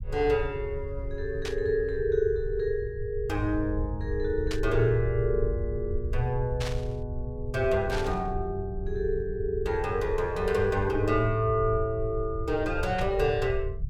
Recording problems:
low-frequency rumble; below 82 Hz, SNR 8 dB
burst of static; 5 times, first at 1.5 s; peak -4 dB vs average level

